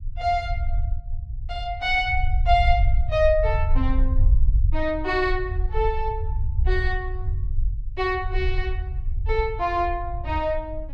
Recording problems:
rumble; below 64 Hz, SNR 2 dB

